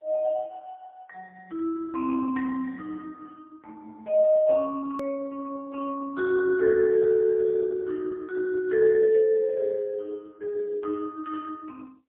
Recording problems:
phone line; 280 Hz to 2.2 kHz, AMR-NB, then MP3
hard cut with a click; at 5 s

